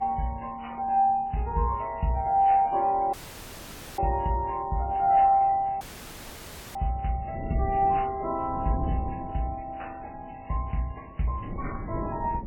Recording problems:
lossy compression; MP3, then AAC, log-spectral distance 3 dB
wind on the microphone; below 260 Hz, SNR 13 dB
audio cutting out; at 3 s for 1 s and at 6 s for 1 s

